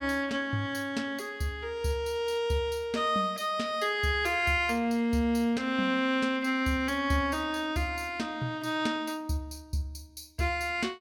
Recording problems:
none

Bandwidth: 17.5 kHz